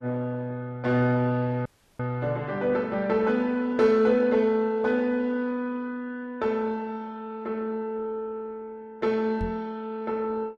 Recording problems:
codec artefacts; Opus, log-spectral distance 2 dB
dropout; at 1.5 s
microphone bump; at 9.5 s; peak -3 dB vs average level

